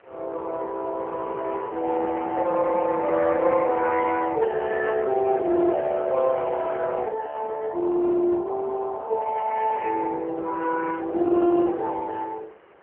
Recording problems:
phone line; 280 Hz to 3.1 kHz, AMR-NB
wind noise; below 1.5 kHz, SNR 24 dB

